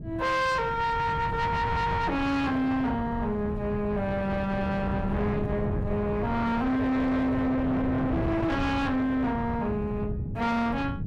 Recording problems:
distortion; soft clipping, signal-to-distortion ratio 7 dB
wind noise; below 260 Hz, SNR 6 dB

